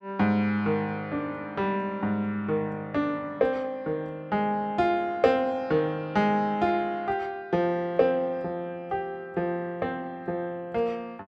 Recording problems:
none

